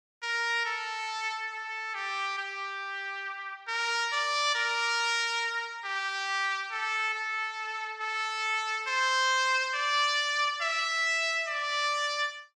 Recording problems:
none

